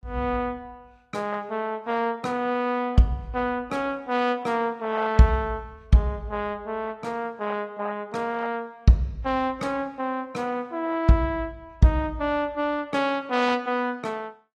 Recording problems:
codec artefacts; AAC, log-spectral distance 2 dB, nothing above 13.8 kHz

